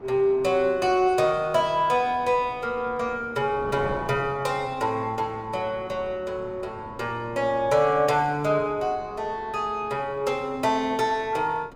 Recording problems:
wind on the microphone; below 780 Hz, SNR 18 dB

